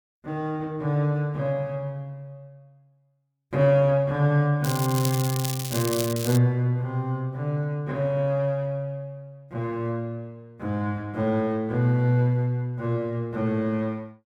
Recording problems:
crackling; from 4.5 to 6.5 s; loose cable, SNR 7 dB

